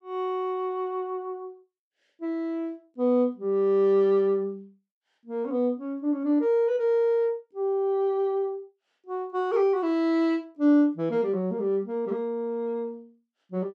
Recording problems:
none

